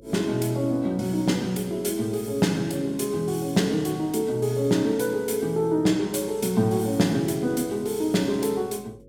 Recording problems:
hum; 50 Hz, harmonics up to 550 Hz, SNR 28 dB

